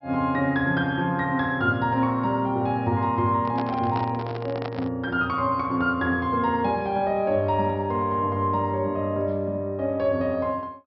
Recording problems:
low-pass filter; nothing above 5.5 kHz
handling noise; from 3.5 to 5 s; peak -5 dB vs average level

